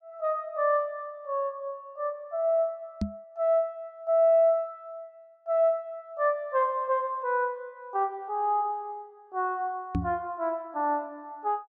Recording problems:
microphone thump; at 3 s and at 10 s; peak +3 dB vs average level

